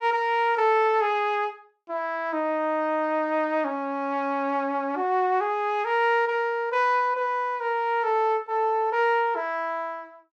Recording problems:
none

